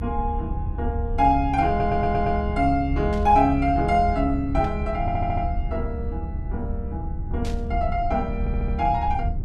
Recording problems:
electrical hum; 50 Hz, harmonics up to 1.2 kHz, SNR 21 dB
low-frequency rumble; below 82 Hz, SNR 6 dB
audio stuttering; at 1.5 s, at 5 s and at 8.5 s
static burst; at 3 s, at 4.5 s and at 7.5 s; peak -12 dB vs average level

